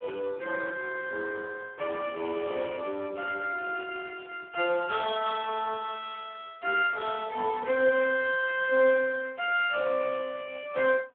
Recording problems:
telephone audio; 260 Hz to 3.4 kHz, Speex

